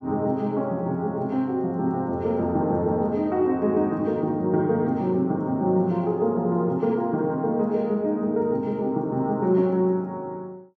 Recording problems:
none

